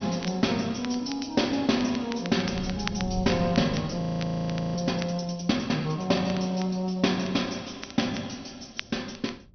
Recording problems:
low-pass filter; nothing above 6.1 kHz
wind on the microphone; below 160 Hz, SNR 13 dB
crackling; vinyl, SNR 15 dB
frozen audio; at 4 s for 0.5 s

